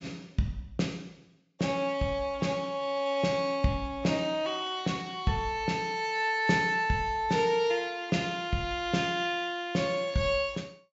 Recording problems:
low-pass filter; nothing above 8 kHz

